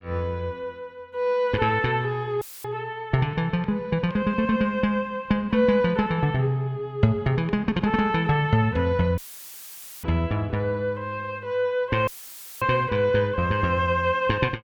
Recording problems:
dropout; at 2.5 s, at 9 s for 1 s and at 12 s for 0.5 s; filled with static

